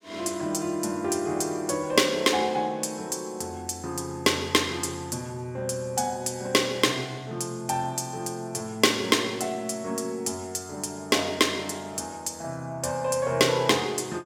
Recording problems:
none

